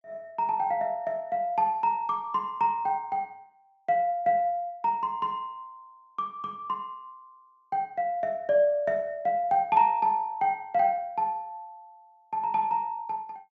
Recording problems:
treble cut off; nothing above 8 kHz

